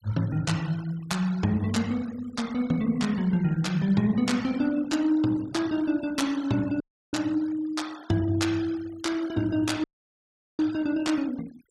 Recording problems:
noise reduction artefacts; signal-to-artefact ratio 20 dB
audio cutting out; at 7 s and at 10 s for 1 s

